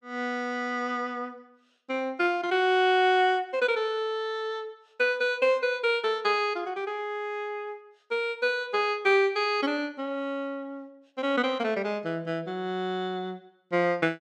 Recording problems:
none

